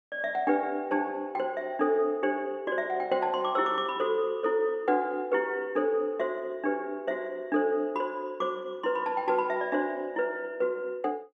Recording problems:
none

